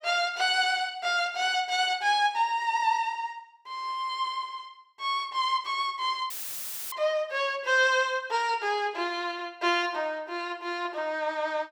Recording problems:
dropout; at 6.5 s for 0.5 s; filled with static

